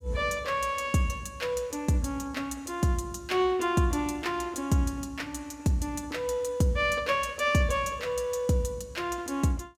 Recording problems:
none

